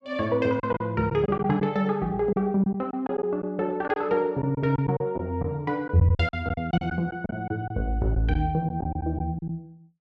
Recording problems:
lost packets; 9% of the sound replaced, filled with silence

